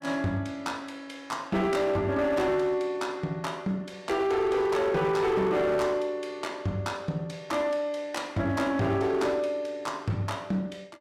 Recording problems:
distorted audio; hard clipping, signal-to-distortion ratio 11 dB

